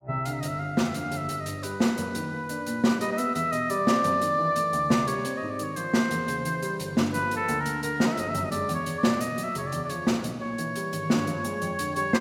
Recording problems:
none

